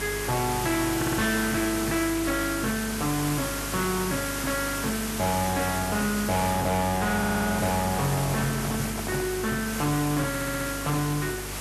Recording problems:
distortion; soft clipping, signal-to-distortion ratio 7 dB
mains hum; 50 Hz, harmonics up to 450 Hz, SNR 11 dB
hiss; slope -2 dB per octave, SNR 5 dB
audio stuttering; at 1 s, at 7 s and at 10 s
microphone handling noise; from 8 to 9.5 s; peak -5 dB vs average level

